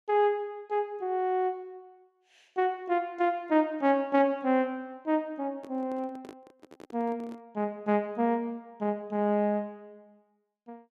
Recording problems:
handling noise; from 5.5 to 7.5 s; peak -11 dB vs average level

